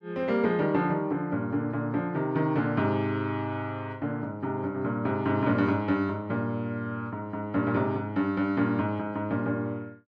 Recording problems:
none

